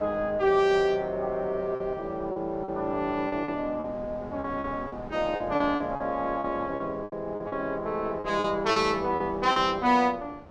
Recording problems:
wind noise; below 690 Hz, SNR 17 dB
packet loss; 9% of the sound replaced, filled with repeated pitch periods

